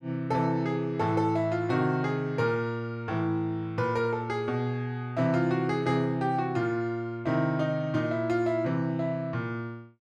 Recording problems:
none

